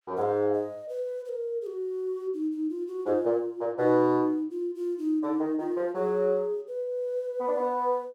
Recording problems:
none

